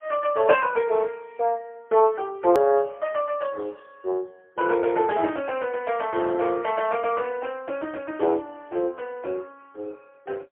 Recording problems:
phone line; 300 Hz to 3.2 kHz, AMR-NB, then MP3
hard cut with a click; at 2.5 s

